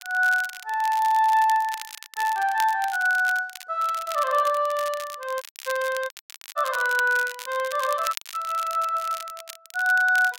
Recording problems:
crackling; vinyl, SNR 15 dB
dropout; at 5.5 s, at 6 s and at 8 s

